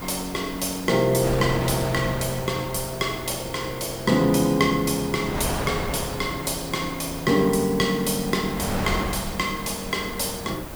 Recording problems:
hiss; SNR 17 dB
wind on the microphone; below 1.1 kHz, SNR 10 dB

